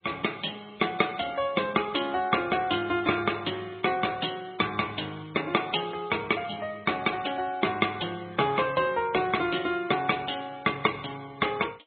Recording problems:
treble cut off; nothing above 3.7 kHz
codec artefacts; MP3, log-spectral distance 9 dB

